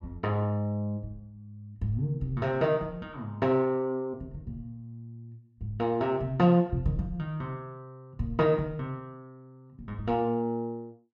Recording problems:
none

